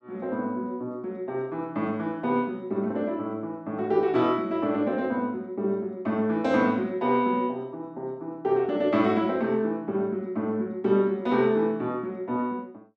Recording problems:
none

